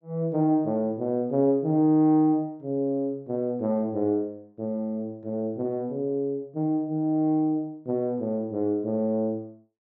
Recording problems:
none

